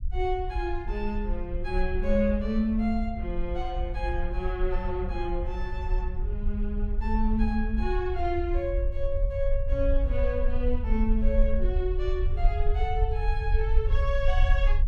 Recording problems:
rumble; below 54 Hz, SNR 0 dB

